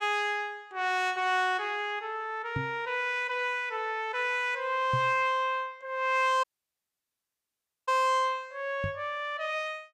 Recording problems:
knock on the microphone; at 2.5 s, at 5 s and at 9 s; peak 0 dB vs average level
audio cutting out; at 6.5 s for 1.5 s

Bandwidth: 15.5 kHz